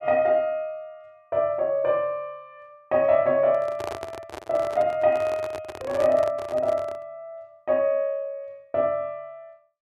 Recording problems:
microphone handling noise; from 3.5 to 7 s; peak -5 dB vs average level

